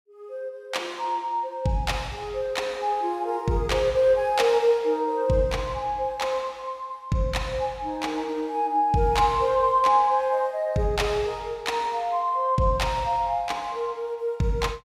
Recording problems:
none

